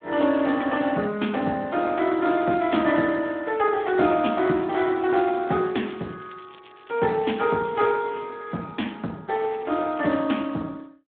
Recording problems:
phone line; 130 Hz to 3.6 kHz, Speex
crackling; from 3.5 to 8 s and from 9.5 to 10 s; loose cable, SNR 27 dB

